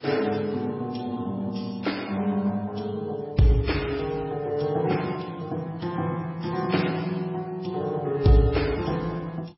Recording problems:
codec artefacts; Vorbis, then MP3, log-spectral distance 5 dB, nothing above 5.5 kHz

